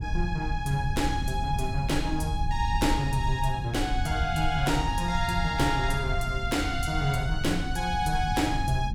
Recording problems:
rumble; below 92 Hz, SNR 5 dB

